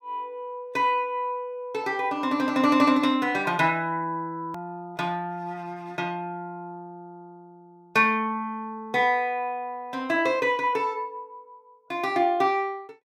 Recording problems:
hard cut with a click; at 4.5 s

